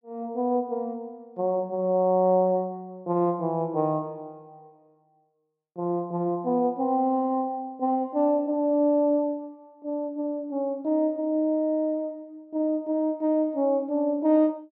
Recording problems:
none

